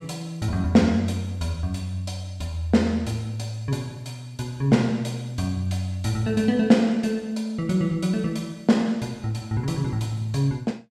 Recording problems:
none

